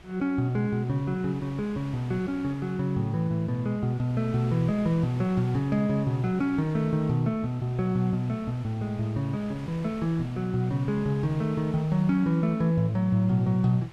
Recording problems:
wind noise; below 2.1 kHz, SNR 20 dB

